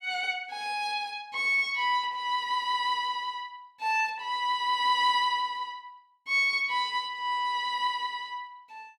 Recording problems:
none

